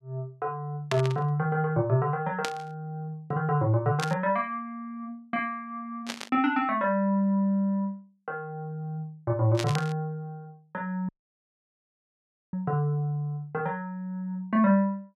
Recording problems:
static burst; 5 times, first at 1 s; peak +1 dB vs average level
dropout; at 11 s for 1.5 s

